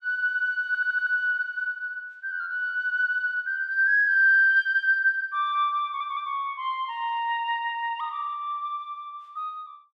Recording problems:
stutter; at 0.5 s and at 6 s

